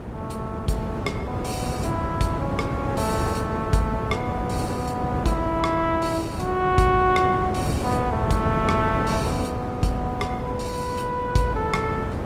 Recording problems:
codec artefacts; Opus, log-spectral distance 2 dB, nothing above 18.9 kHz
hum; 60 Hz, harmonics up to 1.6 kHz, SNR 23 dB
wind on the microphone; below 510 Hz, SNR 3 dB

